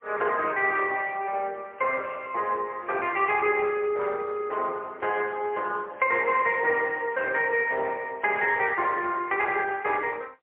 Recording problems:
phone line; 320 Hz to 3.7 kHz, AMR-NB, then MP3

